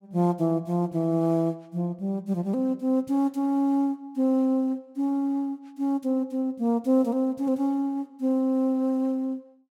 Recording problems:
none

